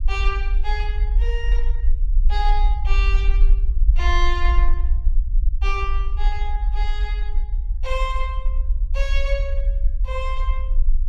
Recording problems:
low-frequency rumble; below 46 Hz, SNR -7 dB

